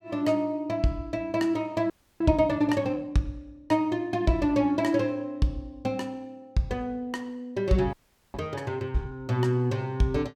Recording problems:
frozen audio; at 2 s and at 8 s

